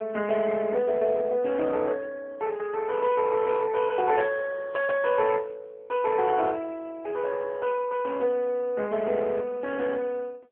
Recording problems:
telephone audio; 300 Hz to 3.1 kHz, AMR-NB

